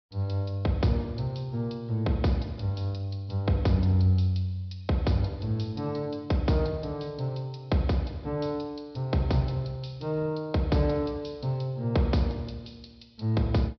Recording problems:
low-pass filter; nothing above 5.5 kHz

